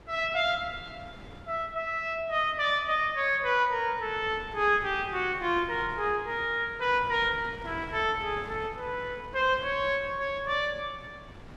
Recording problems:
wind on the microphone; below 760 Hz, SNR 19 dB

